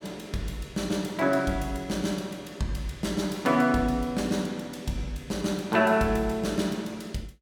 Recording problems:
none

